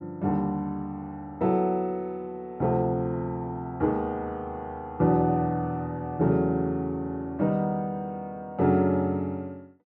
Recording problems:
none

